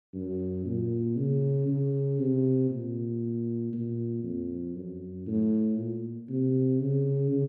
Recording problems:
none

